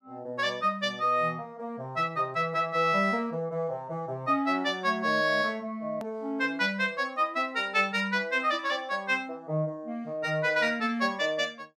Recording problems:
hard cut with a click; at 6 s

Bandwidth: 14 kHz